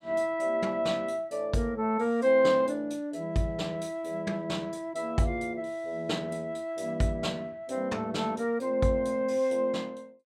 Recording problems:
none

